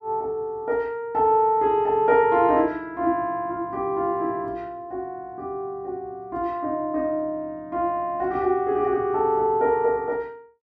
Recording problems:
none

